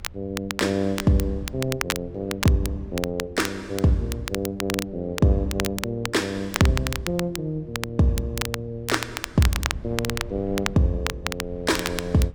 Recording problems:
low-frequency rumble; below 90 Hz, SNR 19 dB
crackle; vinyl, SNR 7 dB

